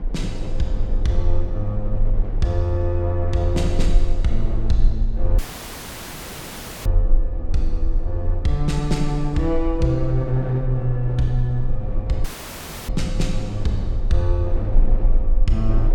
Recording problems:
low-frequency rumble; below 36 Hz, strongest tone 20 Hz, SNR 3 dB
wind on the microphone; below 430 Hz, SNR 13 dB
dropout; at 5.5 s for 1.5 s and at 12 s for 0.5 s

